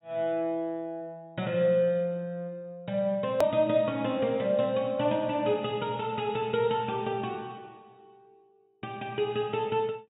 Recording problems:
treble cut off; nothing above 4 kHz
edit click; at 3.5 s

